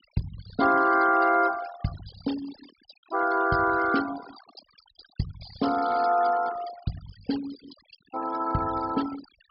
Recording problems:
treble cut off; nothing above 5.4 kHz
noise reduction artefacts; signal-to-artefact ratio 16 dB

